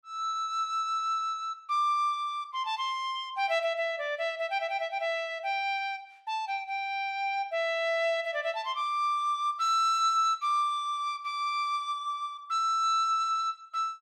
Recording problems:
none

